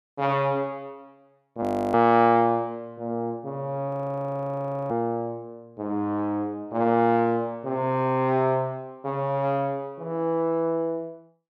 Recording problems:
audio freezing; at 1.5 s and at 4 s for 1 s

